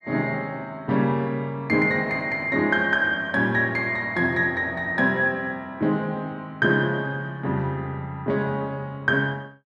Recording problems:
none

